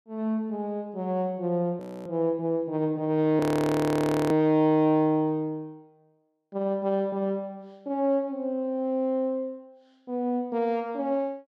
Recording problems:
audio freezing; at 2 s and at 3.5 s for 1 s

